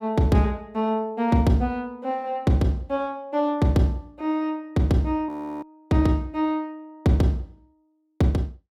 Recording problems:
frozen audio; at 5.5 s

